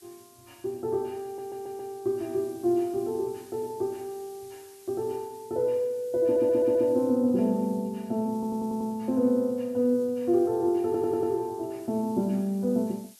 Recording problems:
hiss; slope +2 dB per octave, SNR 26 dB
stutter; 4 times, first at 1.5 s

